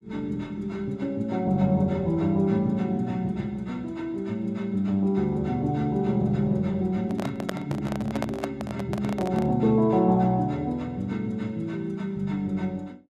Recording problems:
microphone handling noise; from 7 to 9.5 s; peak 0 dB vs average level

